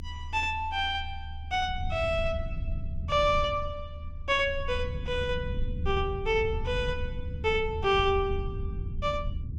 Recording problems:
low-frequency rumble; below 88 Hz, SNR 7 dB

